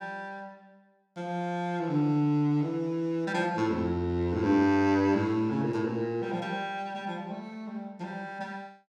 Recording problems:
none

